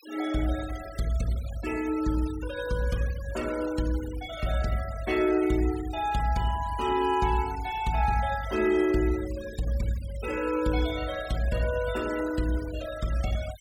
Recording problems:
noise reduction artefacts; signal-to-artefact ratio 16 dB

